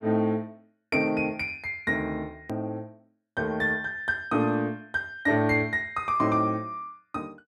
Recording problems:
edit click; at 2.5 s

